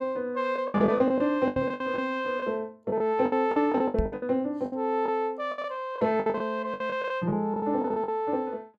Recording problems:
packet loss; 15% of the sound replaced, filled with the last packet
knock on the microphone; at 1.5 s and at 4 s; peak +3 dB vs average level

